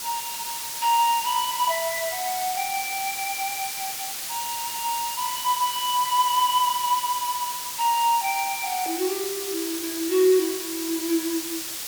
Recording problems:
background hiss; slope +2 dB per octave, SNR 4 dB

